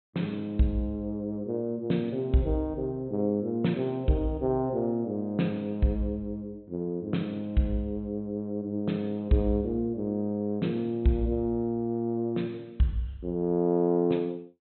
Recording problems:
treble missing; nothing above 4 kHz

